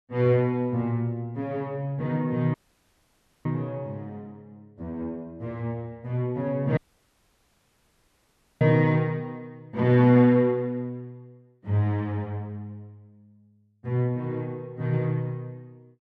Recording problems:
audio cutting out; at 2.5 s for 1 s and at 7 s for 2 s

